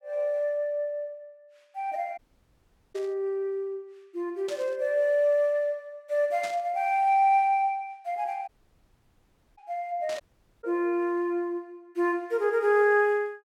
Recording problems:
dropout; at 2 s for 1 s, at 8.5 s for 1 s and at 10 s
burst of static; 4 times, first at 3 s; peak -9 dB vs average level

